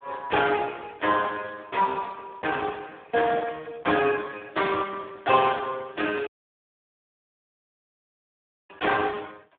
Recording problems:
phone line; 190 Hz to 2.1 kHz, Speex
audio cutting out; at 6.5 s for 2.5 s

